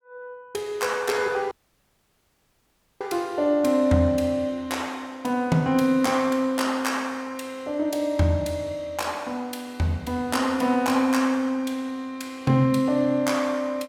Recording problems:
audio cutting out; at 1.5 s for 1.5 s

